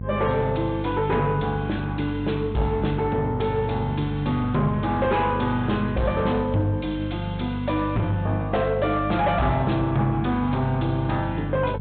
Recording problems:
treble missing; nothing above 3.9 kHz
codec artefacts; MP3, log-spectral distance 2 dB
distortion; soft clipping, signal-to-distortion ratio 10 dB
hum; 50 Hz, harmonics up to 500 Hz, SNR 7 dB

